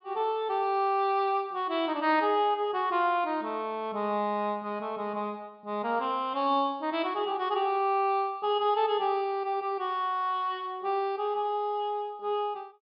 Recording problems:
treble cut off; nothing above 5.5 kHz

